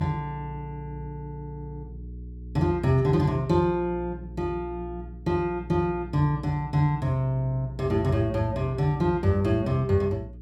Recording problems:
electrical hum; 60 Hz, harmonics up to 420 Hz, SNR 14 dB

